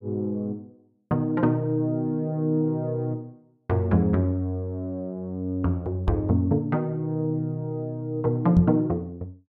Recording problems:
knock on the microphone; at 6 s and at 8.5 s; peak +8 dB vs average level

